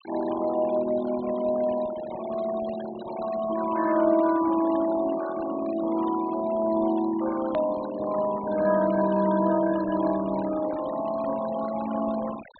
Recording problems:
treble cut off; nothing above 4.1 kHz
denoising artefacts; signal-to-artefact ratio 15 dB
edit click; at 7.5 s

